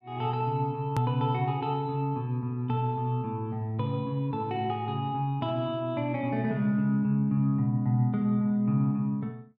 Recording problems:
edit click; at 1 s

